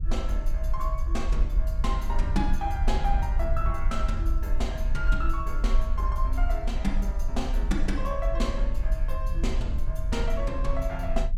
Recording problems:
low-frequency rumble; below 46 Hz, SNR -2 dB
wind noise; below 70 Hz, SNR 1 dB

